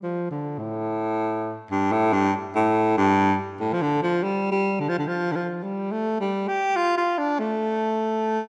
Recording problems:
none

